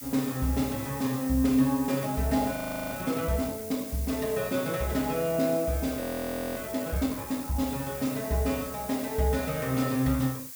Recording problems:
background hiss; SNR 10 dB
frozen audio; at 2.5 s and at 6 s for 0.5 s

